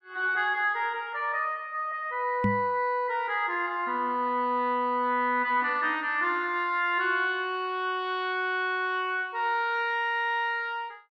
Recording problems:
microphone bump; at 2.5 s; peak +3 dB vs average level

